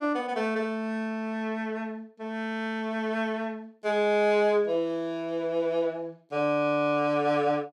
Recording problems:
none

